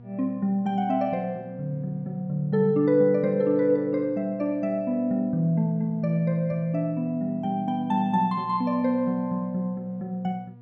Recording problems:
hum; 60 Hz, harmonics up to 960 Hz, SNR 21 dB

